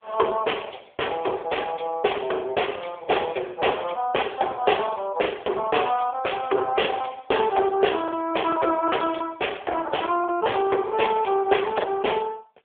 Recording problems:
phone line; 320 Hz to 3.4 kHz, AMR-NB
packet loss; 6% of the sound replaced, filled with the last packet

